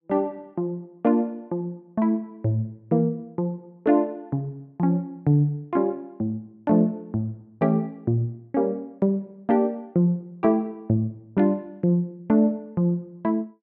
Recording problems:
none

